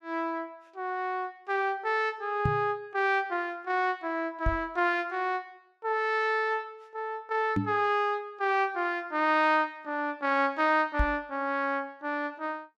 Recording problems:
microphone bump; 4 times, first at 2.5 s; peak +4 dB vs average level

